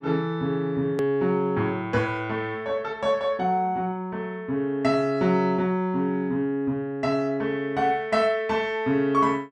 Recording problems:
hard cut with a click; at 1 s

